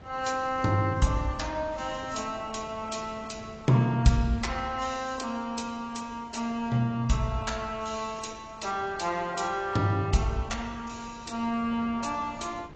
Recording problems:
codec artefacts; AAC, log-spectral distance 5 dB, nothing above 7.6 kHz
wind on the microphone; below 660 Hz, SNR 21 dB

